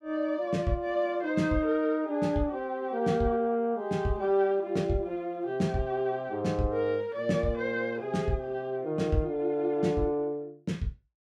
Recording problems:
none

